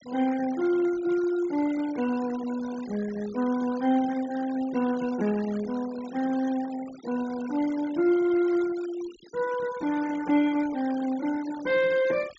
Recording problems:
treble missing; nothing above 7.5 kHz
noise reduction artefacts; signal-to-artefact ratio 18 dB

